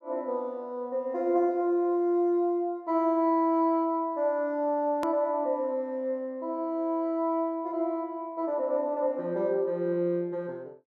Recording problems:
click at an edit; at 5 s

